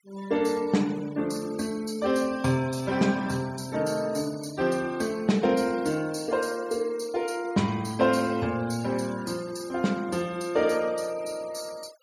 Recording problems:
noise reduction artefacts; signal-to-artefact ratio 20 dB

